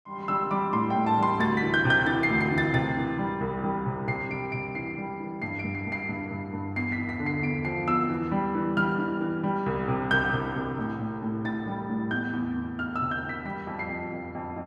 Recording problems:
none

